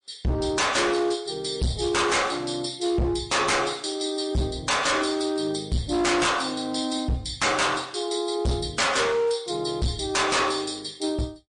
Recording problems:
lossy compression; MP3, log-spectral distance 4 dB, nothing above 9.2 kHz
distorted audio; hard clipping, uneven, signal-to-distortion ratio 7 dB

